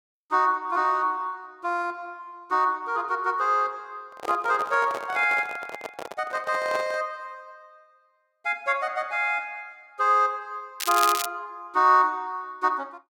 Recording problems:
microphone handling noise; from 4 to 7 s; peak -4 dB vs average level
crackling; at 11 s; loose cable, SNR 5 dB

